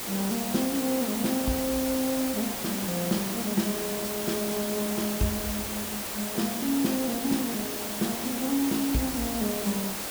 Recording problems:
background hiss; slope -3 dB per octave, SNR 2 dB

